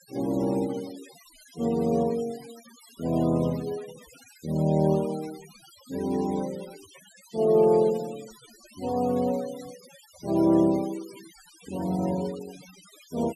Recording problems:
noise reduction artefacts; signal-to-artefact ratio 21 dB

